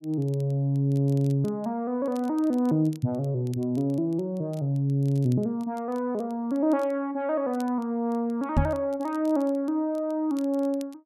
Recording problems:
crackle; vinyl, SNR 29 dB
microphone thump; at 8.5 s; peak +7 dB vs average level

